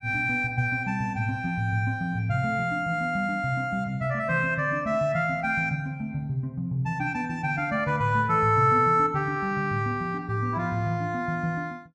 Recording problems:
none

